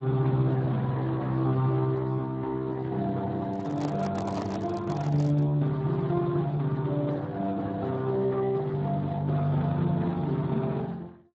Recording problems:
lossy compression; Speex, log-spectral distance 3 dB
microphone handling noise; from 3.5 to 5.5 s; peak -2 dB vs average level

